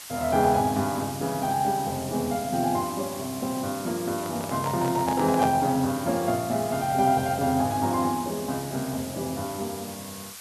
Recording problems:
hiss; slope +2 dB per octave, SNR 12 dB
handling noise; from 4 to 5.5 s; peak 0 dB vs average level

